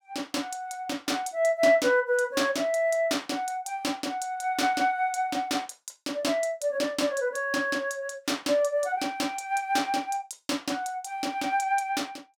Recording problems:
none

